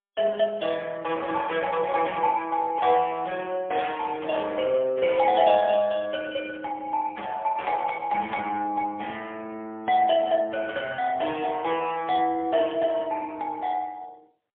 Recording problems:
telephone audio; 240 Hz to 3.3 kHz, AMR-NB, then MP3

